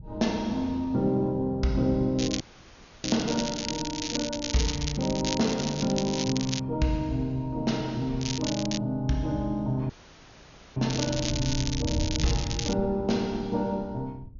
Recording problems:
treble missing; nothing above 6.9 kHz
wind on the microphone; below 120 Hz, SNR 13 dB
crackle; from 2 to 6.5 s, at 8 s and from 11 to 13 s; loose cable, SNR 5 dB
audio cutting out; at 2.5 s for 0.5 s and at 10 s for 1 s

